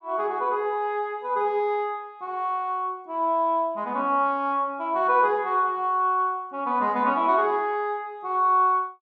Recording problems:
none

